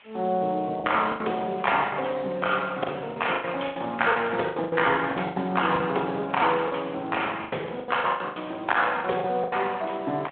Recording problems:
phone line; 280 Hz to 3.4 kHz, Speex
hiss; SNR 27 dB
packet loss; 13% of the sound replaced, filled with the last packet

